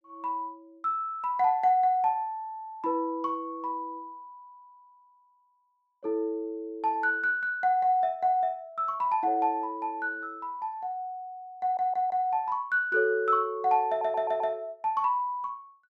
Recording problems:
stutter; at 12 s and at 14 s

